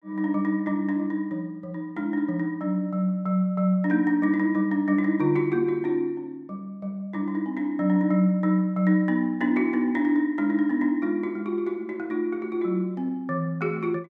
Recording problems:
none

